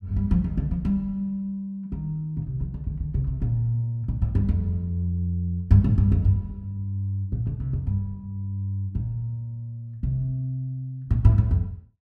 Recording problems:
none

